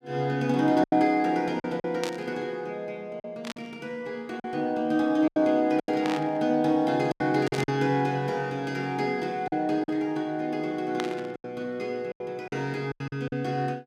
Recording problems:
packet loss; 8% of the sound replaced, filled with silence
static burst; 5 times, first at 2 s; peak -2 dB vs average level

